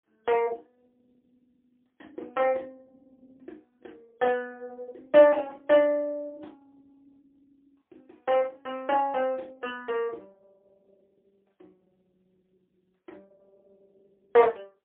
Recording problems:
telephone audio; 320 Hz to 3.5 kHz, AMR-NB, then MP3

